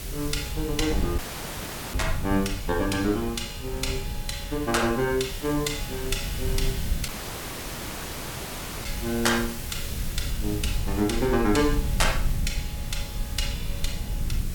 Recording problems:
hiss; slope -1 dB per octave, SNR 11 dB
rumble; below 88 Hz, SNR 5 dB
audio cutting out; at 1 s for 1 s and at 7 s for 2 s

